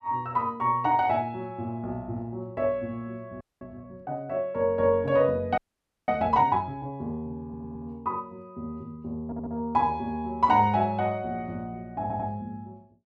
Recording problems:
frozen audio; at 3.5 s and at 5.5 s for 0.5 s
audio stuttering; at 7.5 s, at 9.5 s and at 12 s

